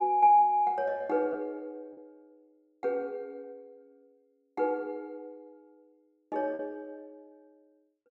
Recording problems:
lost packets; 2% of the sound replaced, filled with repeated pitch periods

